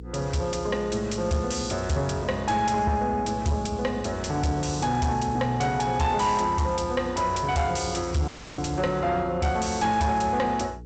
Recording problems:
lossy codec; G.722, log-spectral distance 4 dB, nothing above 8 kHz
distorted audio; soft clipping, signal-to-distortion ratio 10 dB
hum; 60 Hz, harmonics up to 480 Hz, SNR 16 dB
dropout; at 8.5 s

